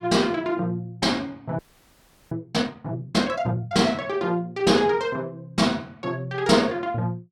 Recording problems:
frozen audio; at 1.5 s for 0.5 s

